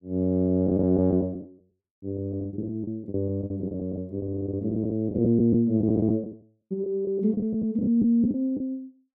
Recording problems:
packet loss; 13% of the sound replaced, filled with the last packet

